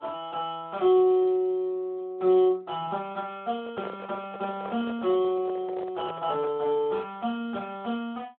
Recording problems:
telephone audio; 190 Hz to 3.5 kHz, Speex
microphone handling noise; from 3.5 to 6.5 s; peak -4 dB vs average level

